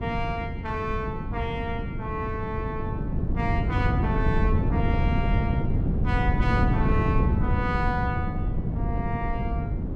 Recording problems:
wind noise; below 180 Hz, SNR -4 dB

